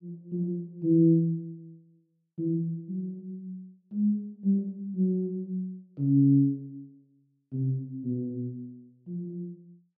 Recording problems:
none

